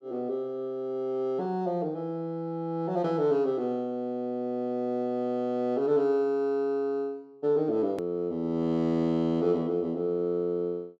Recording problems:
edit click; at 8 s

